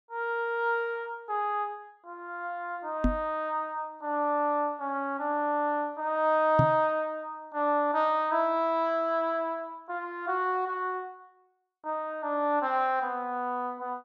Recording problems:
knock on the microphone; at 3 s and at 6.5 s; peak +7 dB vs average level

